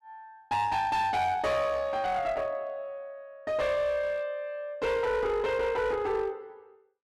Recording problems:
distorted audio; hard clipping, uneven, signal-to-distortion ratio 10 dB

